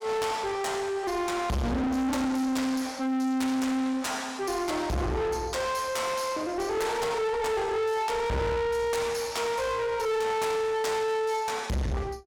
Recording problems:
distorted audio; soft clipping, signal-to-distortion ratio 6 dB

